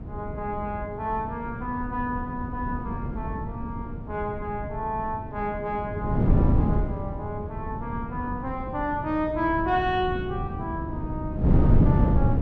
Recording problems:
wind noise; below 200 Hz, SNR -2 dB

